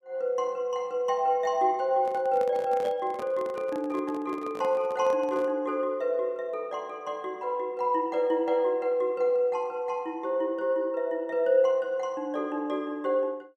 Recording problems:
handling noise; from 2 to 5.5 s; peak -6 dB vs average level

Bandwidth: 14.5 kHz